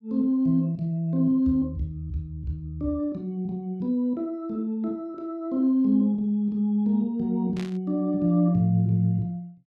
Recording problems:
static burst; at 7.5 s; peak -11 dB vs average level

